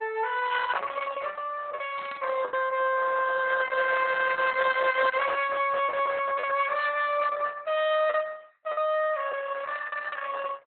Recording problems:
treble missing; nothing above 3.8 kHz
lossy codec; Opus, log-spectral distance 5 dB
lost packets; 4% of the sound replaced, filled with the last packet
static burst; at 2 s; peak -13 dB vs average level

